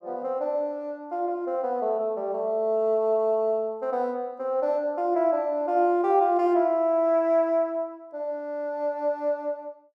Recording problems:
none

